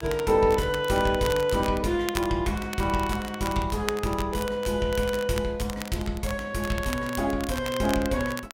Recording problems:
crackle; vinyl, SNR 13 dB

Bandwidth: 16 kHz